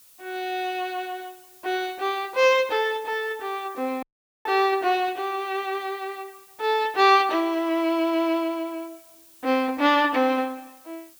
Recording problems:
hiss; slope +1 dB per octave, SNR 25 dB
dropout; at 4 s

